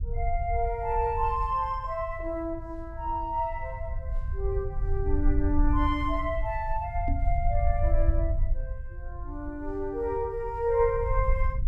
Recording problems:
rumble; below 68 Hz, SNR 2 dB
microphone thump; at 7 s; peak -2 dB vs average level

